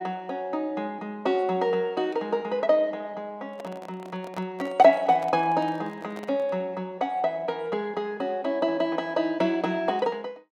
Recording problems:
handling noise; from 3.5 to 6.5 s; peak -8 dB vs average level

